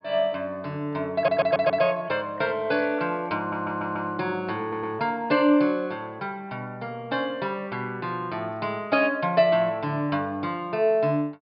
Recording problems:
treble missing; nothing above 5.5 kHz
audio stuttering; at 1 s, at 3.5 s and at 4.5 s

